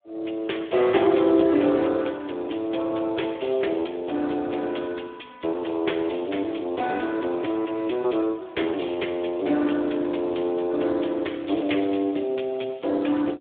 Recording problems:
telephone audio; 260 Hz to 3.5 kHz, Speex

